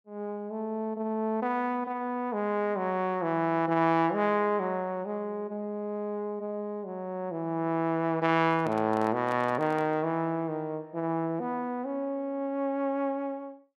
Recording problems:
handling noise; from 8.5 to 10 s; peak -8 dB vs average level

